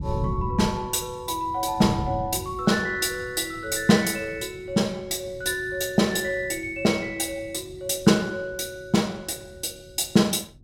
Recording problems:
wind noise; below 180 Hz, SNR 13 dB

